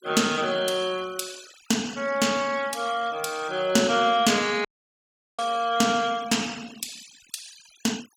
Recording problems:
denoising artefacts; signal-to-artefact ratio 19 dB
audio cutting out; at 4.5 s for 0.5 s

